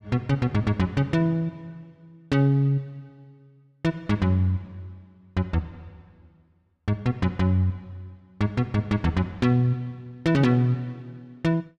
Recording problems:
none

